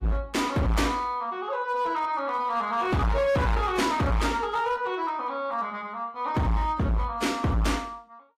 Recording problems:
codec artefacts; AAC, log-spectral distance 2 dB, nothing above 15.1 kHz
distorted audio; hard clipping, signal-to-distortion ratio 7 dB

